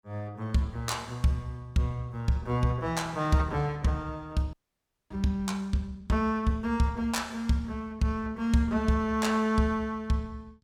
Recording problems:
audio freezing; at 4.5 s for 0.5 s

